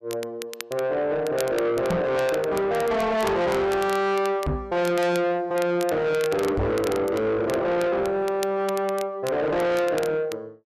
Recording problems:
distortion; soft clipping, signal-to-distortion ratio 6 dB
crackling; vinyl, SNR 17 dB
microphone thump; at 2 s, at 4.5 s and at 6.5 s; peak +4 dB vs average level

